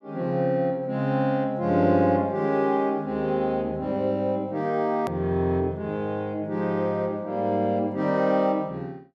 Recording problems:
hard cut with a click; at 5 s

